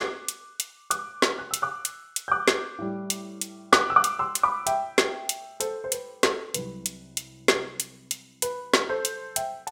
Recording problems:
none

